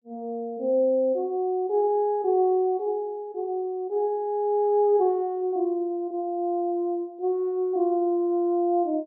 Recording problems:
none

